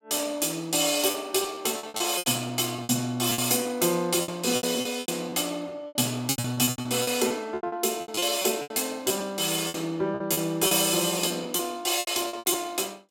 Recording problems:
packet loss; 16% of the sound replaced, filled with repeated pitch periods

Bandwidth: 16.5 kHz